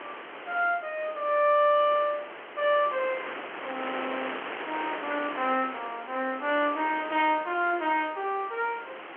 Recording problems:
telephone audio; 280 Hz to 3.4 kHz, G.711
wind noise; below 2.3 kHz, SNR 11 dB

